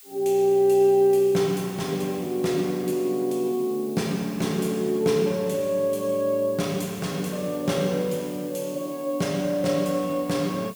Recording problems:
hiss; slope +4 dB per octave, SNR 21 dB

